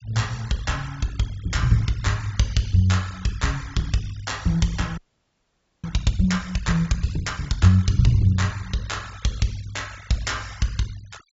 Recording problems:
low-pass filter; nothing above 7.5 kHz
noise reduction artefacts; signal-to-artefact ratio 22 dB
audio freezing; at 5 s for 1 s

